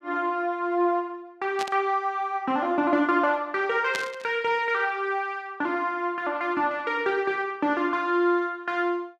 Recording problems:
static burst; at 1.5 s and at 4 s; peak -2 dB vs average level

